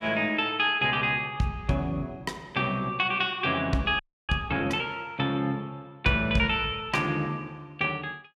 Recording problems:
frozen audio; at 4 s

